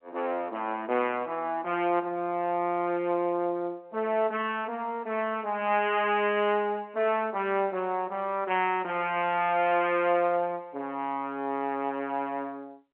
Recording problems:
phone line; 220 Hz to 3.3 kHz, G.711

